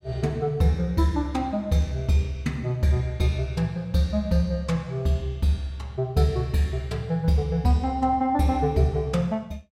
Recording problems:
none

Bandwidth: 16 kHz